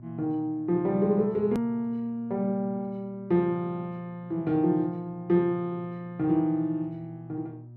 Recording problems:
hum; 60 Hz, harmonics up to 600 Hz, SNR 20 dB
hard cut with a click; at 1.5 s

